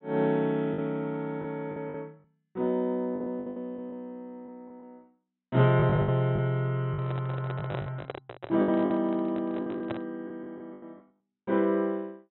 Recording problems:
treble missing; nothing above 4 kHz
lost packets; 10% of the sound replaced, filled with the last packet
handling noise; from 7 to 10 s; peak -2 dB vs average level

